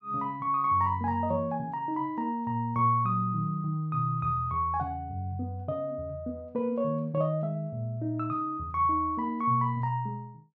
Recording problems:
none

